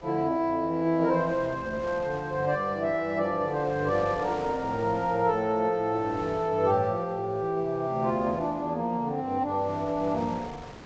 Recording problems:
treble missing; nothing above 8 kHz
wind on the microphone; below 1.5 kHz, SNR 19 dB

